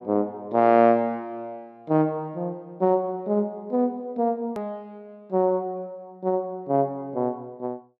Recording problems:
hard cut with a click; at 4.5 s

